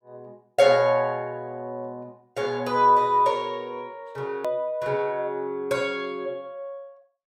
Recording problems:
click at an edit; at 4.5 s

